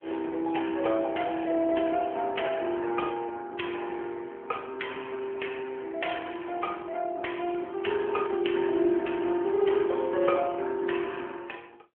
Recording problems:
phone line; 260 Hz to 3.3 kHz, AMR-NB

